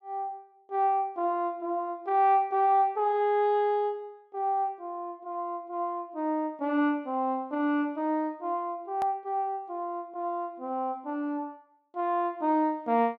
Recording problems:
hard cut with a click; at 9 s

